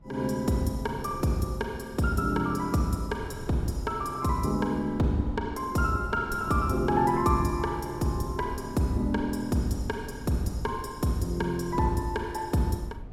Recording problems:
wind on the microphone; below 150 Hz, SNR 17 dB

